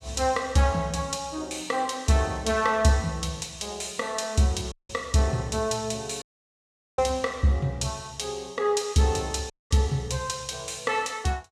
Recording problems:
dropout; at 4.5 s, at 6 s for 1 s and at 9.5 s

